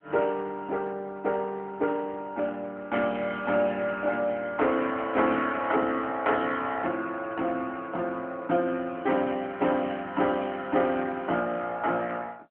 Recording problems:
phone line; 280 Hz to 3.2 kHz, AMR-NB

